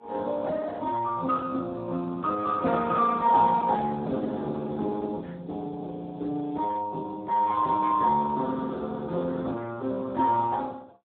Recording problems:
phone line; 260 Hz to 2.1 kHz, Speex

